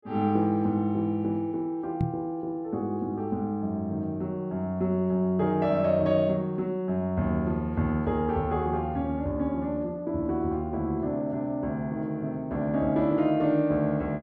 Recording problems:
microphone bump; at 2 s; peak +3 dB vs average level

